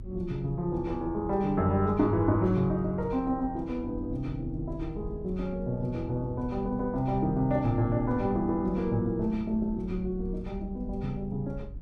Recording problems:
rumble; below 88 Hz, SNR 13 dB

